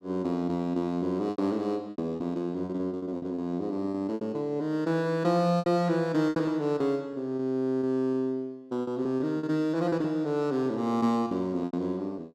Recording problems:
packet loss; 10% of the sound replaced, filled with repeated pitch periods

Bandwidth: 13.5 kHz